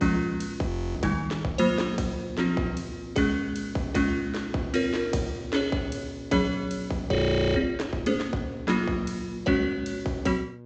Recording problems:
treble missing; nothing above 8 kHz
hum; 60 Hz, harmonics up to 1.1 kHz, SNR 18 dB
frozen audio; at 0.5 s and at 7 s

